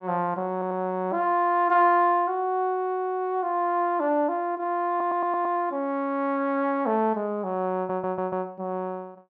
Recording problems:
audio stuttering; at 0.5 s, at 5 s and at 8 s

